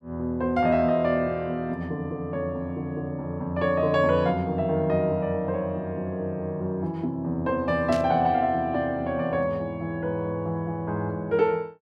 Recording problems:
burst of static; at 8 s; peak -6 dB vs average level

